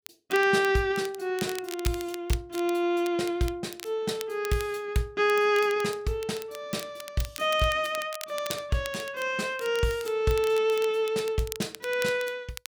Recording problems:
crackle; vinyl, SNR 15 dB

